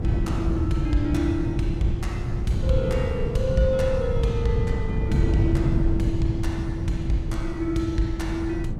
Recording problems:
wind on the microphone; below 150 Hz, SNR 0 dB

